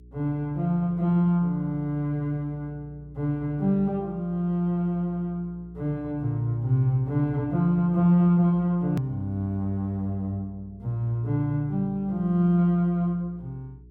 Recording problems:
electrical hum; 60 Hz, harmonics up to 420 Hz, SNR 23 dB
click at an edit; at 9 s

